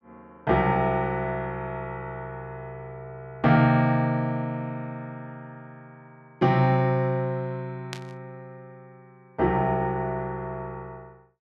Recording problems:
burst of static; at 8 s; peak -5 dB vs average level

